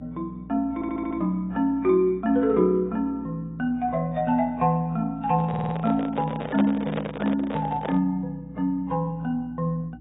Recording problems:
lossy codec; AAC, log-spectral distance 2 dB, nothing above 3.6 kHz
hum; 60 Hz, harmonics up to 300 Hz, SNR 22 dB
stutter; at 0.5 s and at 5.5 s
handling noise; from 5.5 to 8 s; peak 0 dB vs average level

